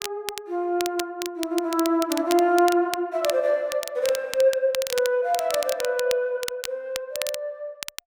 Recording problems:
crackling; vinyl, SNR 10 dB

